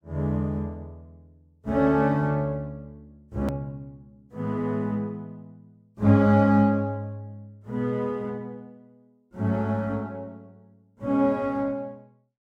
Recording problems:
click at an edit; at 3.5 s

